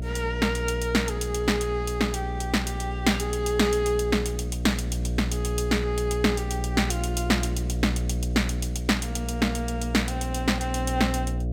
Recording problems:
hum; 60 Hz, harmonics up to 660 Hz, SNR 4 dB

